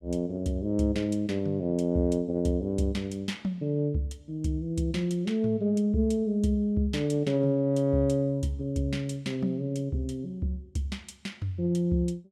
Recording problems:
none

